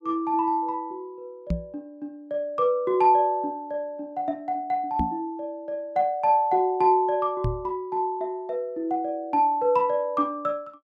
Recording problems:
knock on the microphone; at 1.5 s, at 5 s and at 7.5 s; peak +2 dB vs average level

